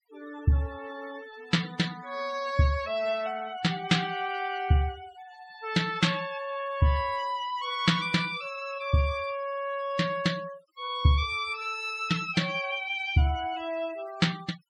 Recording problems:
denoising artefacts; signal-to-artefact ratio 18 dB

